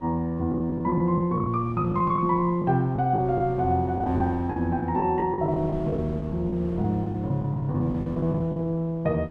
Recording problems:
wind noise; below 340 Hz, SNR 16 dB
lost packets; 11% of the sound replaced, filled with the last packet

